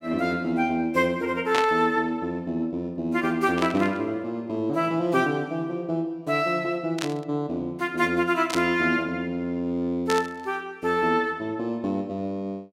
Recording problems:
burst of static; 5 times, first at 1.5 s; peak +2 dB vs average level

